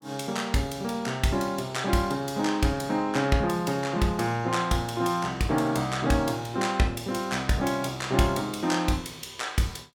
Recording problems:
none

